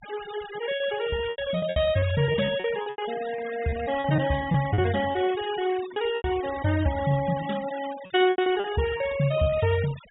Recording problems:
treble cut off; nothing above 4 kHz
denoising artefacts; signal-to-artefact ratio 14 dB
lost packets; 10% of the sound replaced, filled with repeated pitch periods

